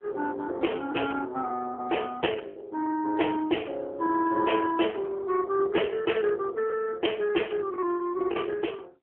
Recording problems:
phone line; 260 Hz to 3.3 kHz, AMR-NB
lost packets; 5% of the sound replaced, filled with the last packet

